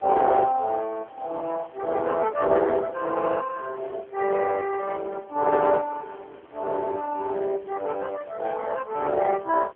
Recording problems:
telephone audio; 280 Hz to 2.6 kHz, AMR-NB
hiss; SNR 28 dB

